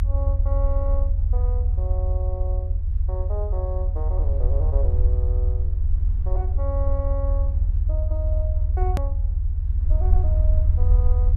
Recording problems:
low-frequency rumble; below 80 Hz, strongest tone 40 Hz, SNR -12 dB
edit click; at 9 s

